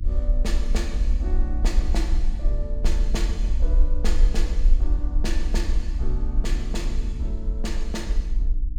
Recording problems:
hum; 60 Hz, harmonics up to 300 Hz, SNR 11 dB
low-frequency rumble; below 46 Hz, SNR -8 dB

